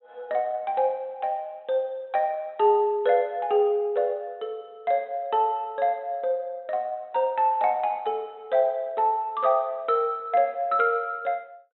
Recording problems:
treble missing; nothing above 3.9 kHz

